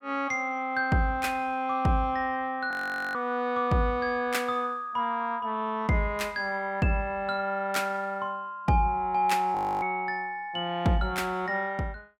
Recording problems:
audio freezing; at 2.5 s and at 9.5 s

